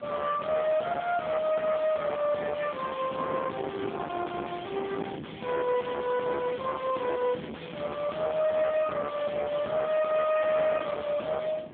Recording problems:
phone line; 220 Hz to 3.4 kHz, AMR-NB
distorted audio; soft clipping, signal-to-distortion ratio 7 dB
wind noise; below 1.1 kHz, SNR 11 dB

